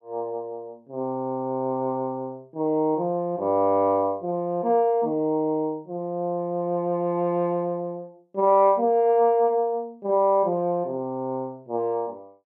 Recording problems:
none

